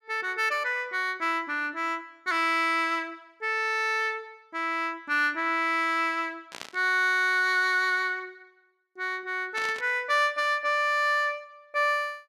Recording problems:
static burst; at 6.5 s and at 9.5 s; peak -8 dB vs average level

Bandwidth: 14.5 kHz